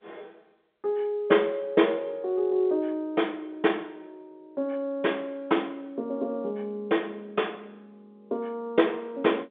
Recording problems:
telephone audio; 220 Hz to 3.6 kHz, G.711

